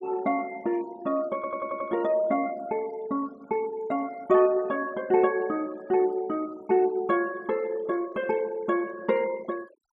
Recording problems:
noise reduction artefacts; signal-to-artefact ratio 23 dB
audio stuttering; at 1.5 s

